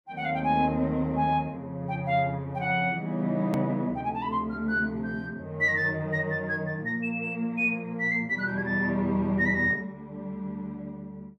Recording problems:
hard cut with a click; at 3.5 s

